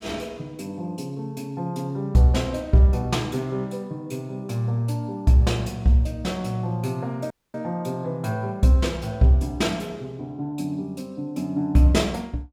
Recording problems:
dropout; at 7.5 s

